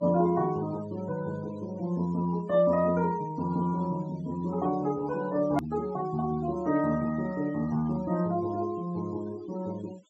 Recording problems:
treble missing; nothing above 7.9 kHz
denoising artefacts; signal-to-artefact ratio 21 dB
hard cut with a click; at 5.5 s

